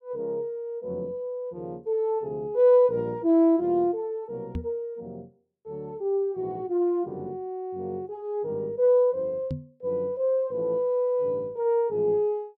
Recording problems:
knock on the microphone; at 4.5 s and at 9.5 s; peak -2 dB vs average level

